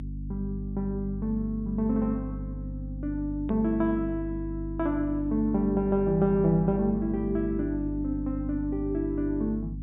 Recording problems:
treble cut off; nothing above 4 kHz
hum; 50 Hz, harmonics up to 300 Hz, SNR 8 dB
edit click; at 3.5 s

